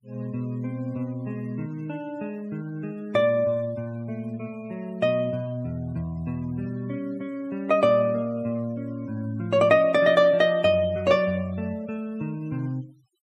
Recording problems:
denoising artefacts; signal-to-artefact ratio 28 dB

